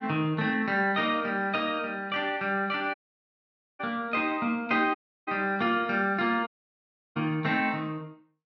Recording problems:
dropout; at 3 s for 1 s, at 5 s and at 6.5 s for 0.5 s

